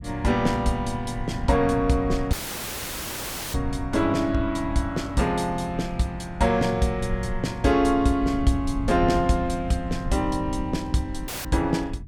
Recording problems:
low-frequency rumble; below 110 Hz, SNR 11 dB
audio cutting out; at 2.5 s for 1 s and at 11 s; filled with static

